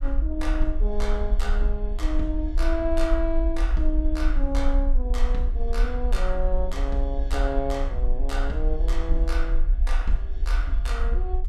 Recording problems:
low-frequency rumble; below 48 Hz, SNR -4 dB

